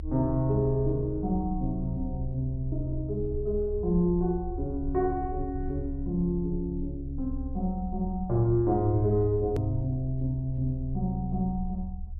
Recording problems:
treble missing; nothing above 5.5 kHz
low-frequency rumble; below 70 Hz, strongest tone 28 Hz, SNR 9 dB
edit click; at 9.5 s

